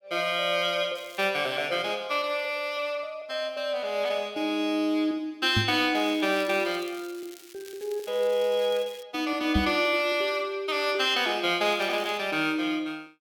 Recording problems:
crackle; at 1 s, from 6 to 9 s and at 12 s; loose cable, SNR 22 dB
knock on the microphone; at 5.5 s and at 9.5 s; peak +4 dB vs average level

